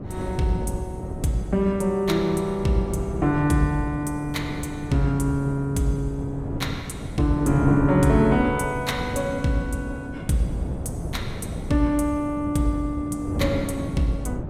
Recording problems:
wind noise; below 300 Hz, SNR 8 dB

